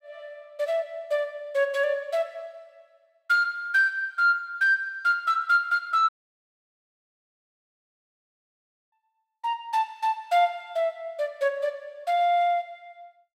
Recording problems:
dropout; at 6 s for 3 s

